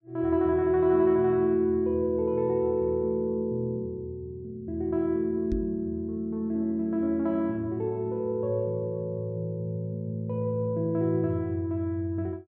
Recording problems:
microphone thump; at 5.5 s; peak -2 dB vs average level

